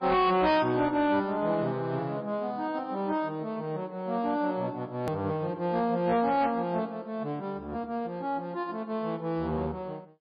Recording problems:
lossy compression; MP3, log-spectral distance 2 dB, nothing above 15.1 kHz
distortion; hard clipping, uneven, signal-to-distortion ratio 12 dB
click at an edit; at 5 s

